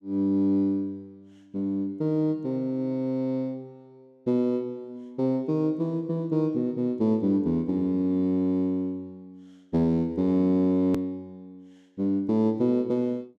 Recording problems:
edit click; at 11 s

